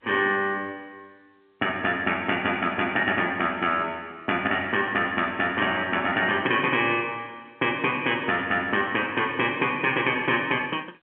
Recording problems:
phone line; 300 Hz to 3.4 kHz, G.711

